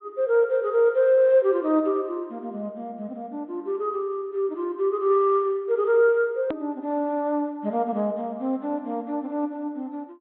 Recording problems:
treble missing; nothing above 4 kHz
hard cut with a click; at 6.5 s

